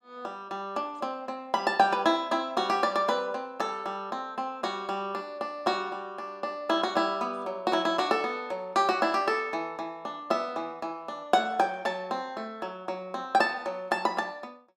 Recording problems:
none

